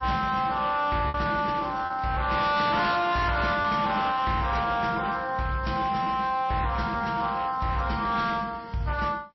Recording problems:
codec artefacts; MP3, then AAC, log-spectral distance 3 dB, nothing above 5.7 kHz
distortion; hard clipping, signal-to-distortion ratio 11 dB
packet loss; 1.7% of the sound replaced, filled with repeated pitch periods

